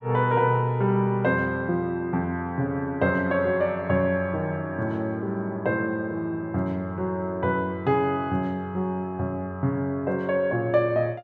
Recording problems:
none

